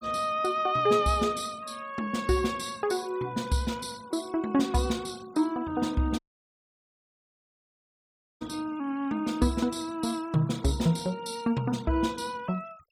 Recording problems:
noise reduction artefacts; signal-to-artefact ratio 22 dB
dropout; at 6 s for 2 s

